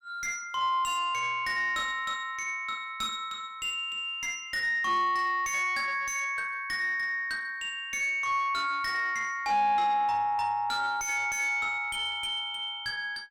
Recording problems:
distorted audio; soft clipping, signal-to-distortion ratio 11 dB

